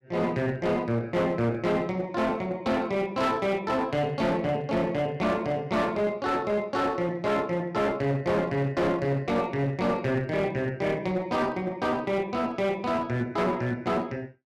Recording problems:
distorted audio; hard clipping, uneven, signal-to-distortion ratio 10 dB

